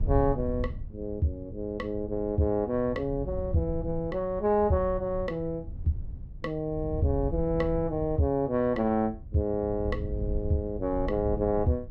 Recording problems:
wind on the microphone; below 98 Hz, SNR 9 dB

